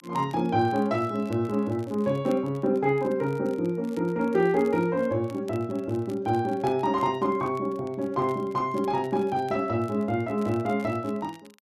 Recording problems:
crackle; vinyl, SNR 28 dB

